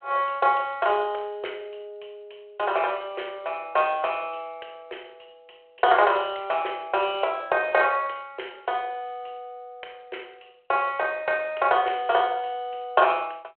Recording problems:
telephone audio; 320 Hz to 3.3 kHz, G.726

